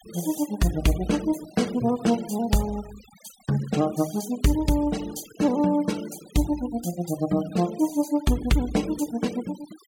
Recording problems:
denoising artefacts; signal-to-artefact ratio 18 dB

